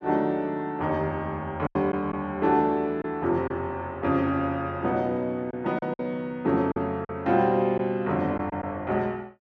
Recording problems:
lost packets; 4% of the sound replaced, filled with silence

